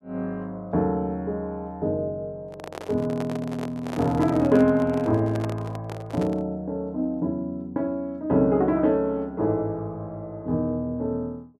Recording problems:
microphone handling noise; from 2.5 to 6.5 s; peak -4 dB vs average level

